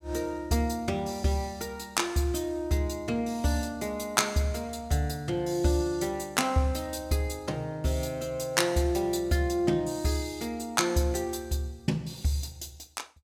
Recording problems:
none

